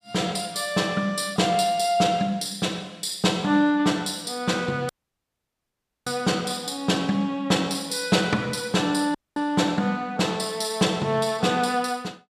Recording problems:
audio cutting out; at 5 s for 1 s and at 9 s

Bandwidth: 15 kHz